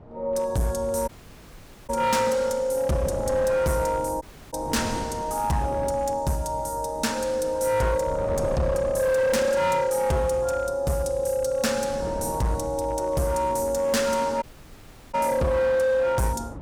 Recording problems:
distortion; hard clipping, signal-to-distortion ratio 10 dB
wind on the microphone; below 470 Hz, SNR 15 dB
audio cutting out; at 1 s for 1 s, at 4 s and at 14 s for 0.5 s

